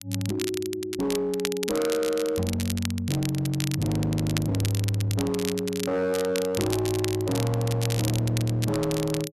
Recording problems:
distorted audio; hard clipping, signal-to-distortion ratio 10 dB
crackling; vinyl, SNR 9 dB

